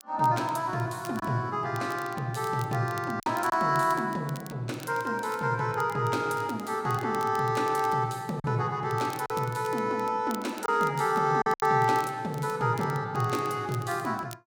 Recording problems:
crackling; vinyl, SNR 21 dB
packet loss; 2% of the sound replaced, filled with silence

